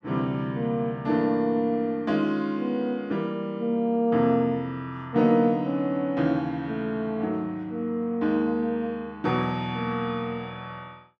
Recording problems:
none

